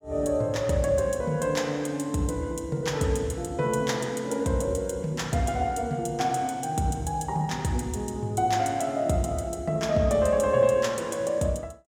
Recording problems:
none

